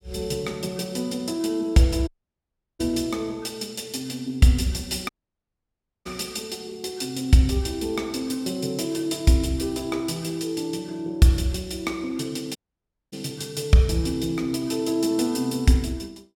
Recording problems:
audio cutting out; at 2 s for 0.5 s, at 5 s for 1 s and at 13 s for 0.5 s

